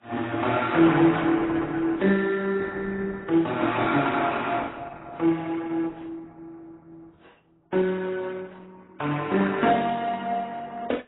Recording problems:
codec artefacts; Opus, then AAC, log-spectral distance 4 dB, nothing above 3.8 kHz

